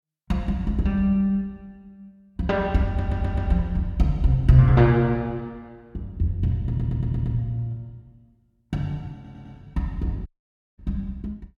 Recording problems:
stutter; at 3 s, at 6.5 s and at 9 s
dropout; at 10 s for 0.5 s

